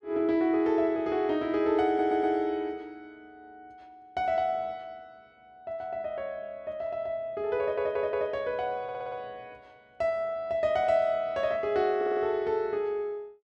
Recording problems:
audio stuttering; 4 times, first at 2 s

